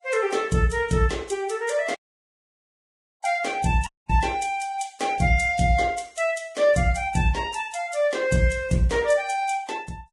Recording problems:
lossy codec; Vorbis, log-spectral distance 3 dB, nothing above 10.4 kHz
dropout; at 2 s for 1.5 s and at 4 s

